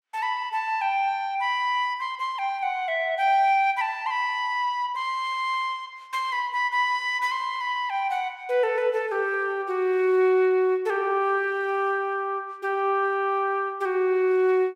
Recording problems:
none

